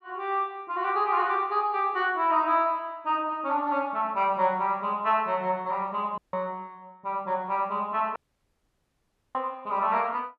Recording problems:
dropout; at 6 s and at 8 s for 1 s

